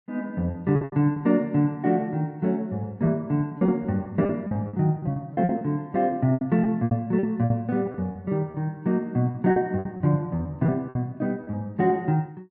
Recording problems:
lost packets; 12% of the sound replaced, filled with repeated pitch periods

